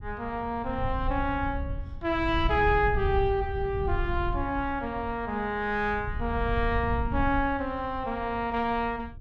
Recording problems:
low-frequency rumble; below 90 Hz, SNR 7 dB

